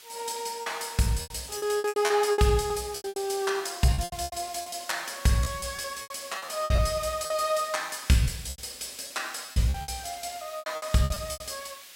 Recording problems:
background hiss; slope +3 dB per octave, SNR 17 dB
lost packets; 16% of the sound replaced, filled with repeated pitch periods

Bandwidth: 16 kHz